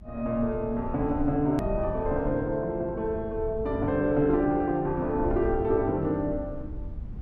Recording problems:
low-frequency rumble; below 82 Hz, SNR 12 dB
hard cut with a click; at 1.5 s

